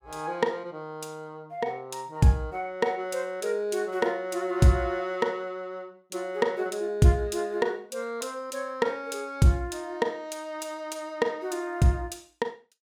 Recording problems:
none

